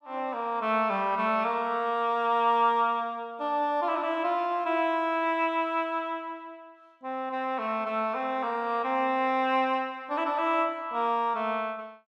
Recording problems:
none

